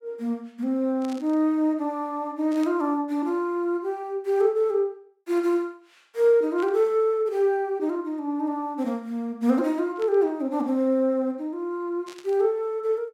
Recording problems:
burst of static; 5 times, first at 1 s; peak -14 dB vs average level

